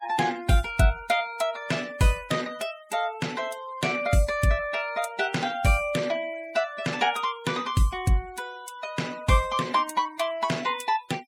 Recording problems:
denoising artefacts; signal-to-artefact ratio 20 dB

